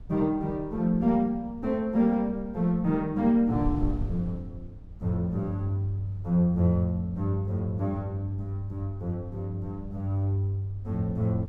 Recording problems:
wind noise; below 90 Hz, SNR 15 dB

